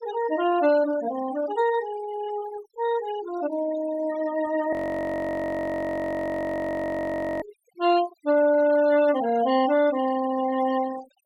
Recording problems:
noise reduction artefacts; signal-to-artefact ratio 16 dB
frozen audio; at 4.5 s for 2.5 s

